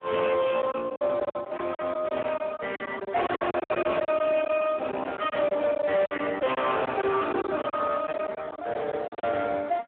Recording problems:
telephone audio; 260 Hz to 2.6 kHz, Speex
distorted audio; hard clipping, signal-to-distortion ratio 10 dB
packet loss; 12% of the sound replaced, filled with silence
microphone handling noise; from 4.5 to 6.5 s; peak -6 dB vs average level

